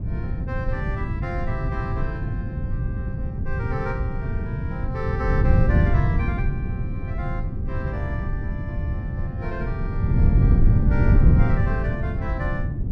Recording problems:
wind on the microphone; below 130 Hz, SNR -9 dB

